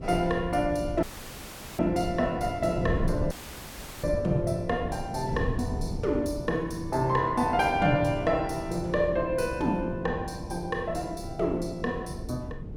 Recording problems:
wind noise; below 200 Hz, SNR 8 dB
audio cutting out; at 1 s for 1 s and at 3.5 s for 0.5 s

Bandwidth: 17 kHz